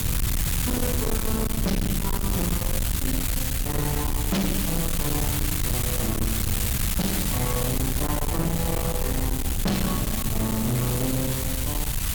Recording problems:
distorted audio; hard clipping, uneven, signal-to-distortion ratio 5 dB
background hiss; slope 0 dB per octave, SNR -1 dB
rumble; below 180 Hz, SNR 0 dB

